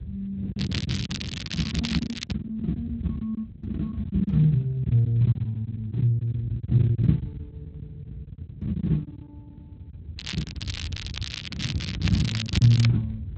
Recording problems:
lossy codec; Speex, log-spectral distance 5 dB, nothing above 13.1 kHz
rumble; below 130 Hz, SNR 15 dB
wind on the microphone; below 210 Hz, SNR 14 dB
packet loss; 14% of the sound replaced, filled with silence
crackle; from 0.5 to 2.5 s and from 10 to 13 s; loose cable, SNR 8 dB

